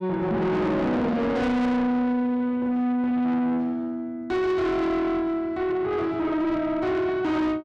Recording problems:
distortion; soft clipping, signal-to-distortion ratio 8 dB

